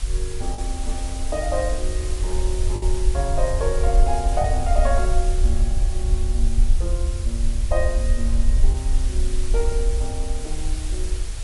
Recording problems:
lossy codec; MP3, log-spectral distance 3 dB
background hiss; slope +1 dB per octave, SNR 8 dB
rumble; below 54 Hz, SNR -5 dB
wind noise; below 690 Hz, SNR 21 dB
packet loss; 1.2% of the sound replaced, filled with the last packet

